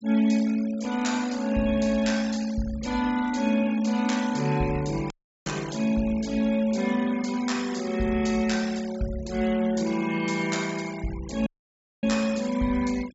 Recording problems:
treble cut off; nothing above 8 kHz
denoising artefacts; signal-to-artefact ratio 18 dB
audio cutting out; at 5 s and at 11 s for 0.5 s

